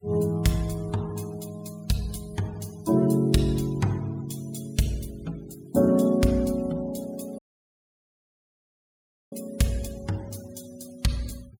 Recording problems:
noise reduction artefacts; signal-to-artefact ratio 23 dB
dropout; at 7.5 s for 2 s

